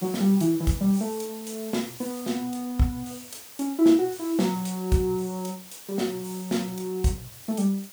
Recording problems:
hiss; slope 0 dB per octave, SNR 15 dB

